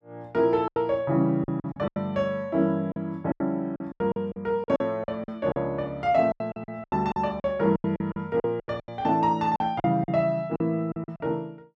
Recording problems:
packet loss; 15% of the sound replaced, filled with silence

